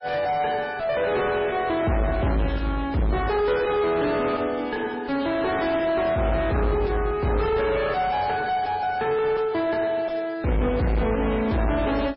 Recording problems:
codec artefacts; MP3, log-spectral distance 3 dB, nothing above 4.6 kHz
distorted audio; soft clipping, signal-to-distortion ratio 6 dB

